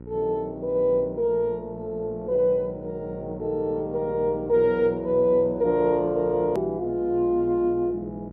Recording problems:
electrical hum; 60 Hz, harmonics up to 900 Hz, SNR 18 dB
click at an edit; at 6.5 s

